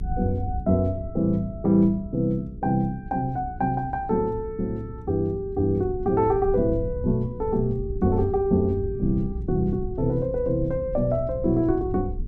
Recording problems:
electrical hum; 60 Hz, harmonics up to 420 Hz, SNR 18 dB
low-frequency rumble; below 98 Hz, SNR 12 dB

